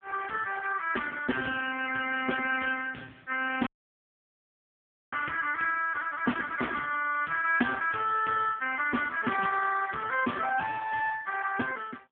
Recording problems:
phone line; 170 Hz to 3.3 kHz, AMR-NB
audio cutting out; at 3.5 s for 1.5 s

